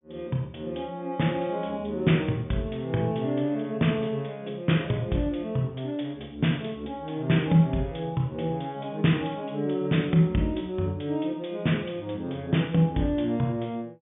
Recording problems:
low-pass filter; nothing above 3.6 kHz

